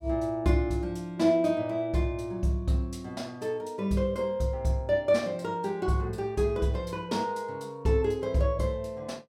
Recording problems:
none

